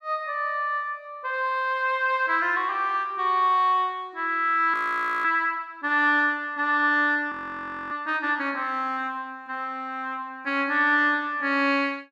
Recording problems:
audio freezing; at 4.5 s for 0.5 s and at 7.5 s for 0.5 s

